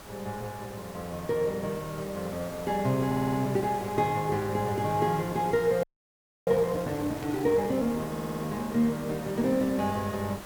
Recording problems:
background hiss; slope -5 dB per octave, SNR 14 dB
stutter; at 3 s and at 8 s
audio freezing; at 6 s for 0.5 s
static burst; at 7 s; peak -15 dB vs average level

